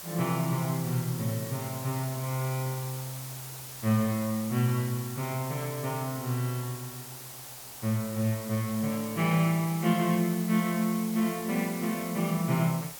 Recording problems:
hiss; SNR 10 dB

